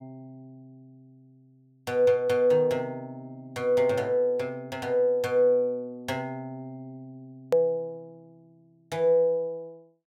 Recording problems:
hard cut with a click; at 7.5 s

